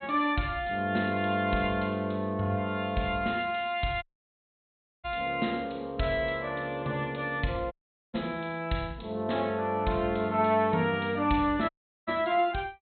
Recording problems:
low-pass filter; nothing above 4.1 kHz
audio cutting out; at 4 s for 1 s, at 7.5 s and at 12 s

